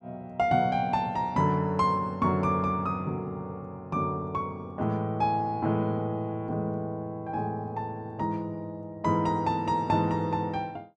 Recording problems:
none

